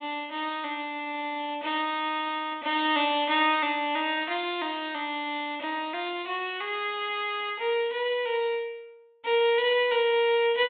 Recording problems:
treble cut off; nothing above 4 kHz

